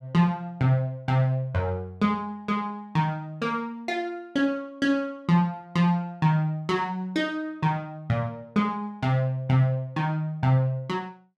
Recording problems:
none

